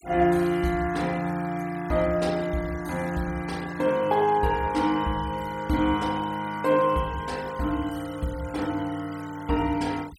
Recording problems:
noise reduction artefacts; signal-to-artefact ratio 20 dB

